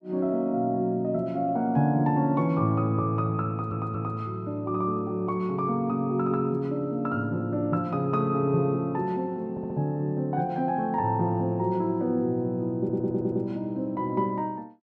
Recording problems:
stutter; at 3.5 s, at 9.5 s and at 13 s

